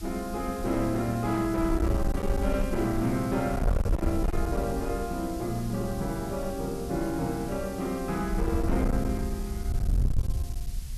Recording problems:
distortion; hard clipping, uneven, signal-to-distortion ratio 7 dB
hiss; slope +2 dB per octave, SNR 17 dB
wind on the microphone; below 84 Hz, SNR 4 dB

